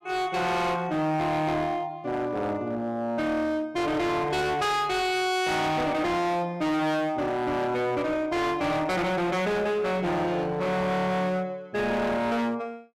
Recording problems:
distortion; hard clipping, signal-to-distortion ratio 6 dB

